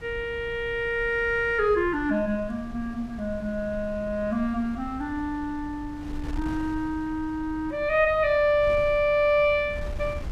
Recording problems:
wind noise; below 120 Hz, SNR 15 dB

